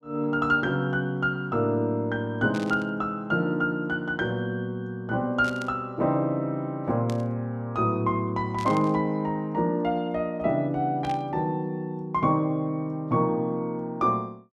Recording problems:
static burst; 5 times, first at 2.5 s; peak -9 dB vs average level

